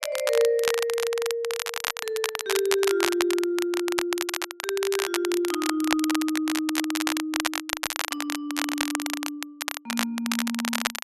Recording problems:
crackling; vinyl, SNR 2 dB

